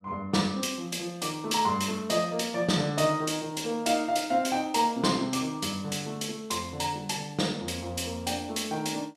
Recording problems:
none

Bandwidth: 14.5 kHz